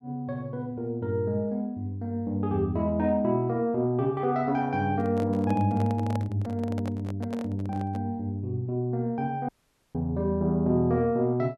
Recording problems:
handling noise; from 5 to 8 s; peak -5 dB vs average level
dropout; at 9.5 s

